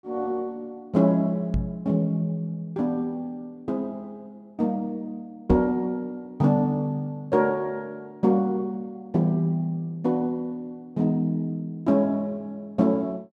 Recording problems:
microphone thump; at 1.5 s and at 5.5 s; peak +4 dB vs average level

